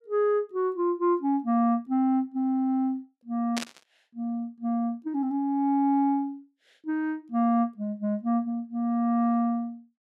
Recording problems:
static burst; at 3.5 s; peak -1 dB vs average level

